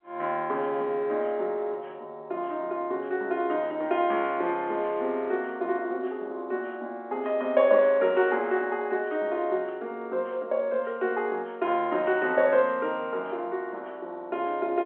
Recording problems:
phone line; 240 Hz to 3.4 kHz, G.711

